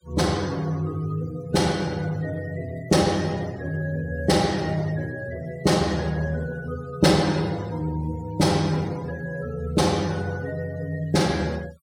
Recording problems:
denoising artefacts; signal-to-artefact ratio 23 dB

